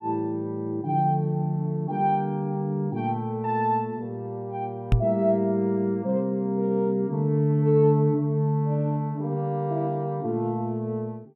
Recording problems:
knock on the microphone; at 5 s; peak +8 dB vs average level

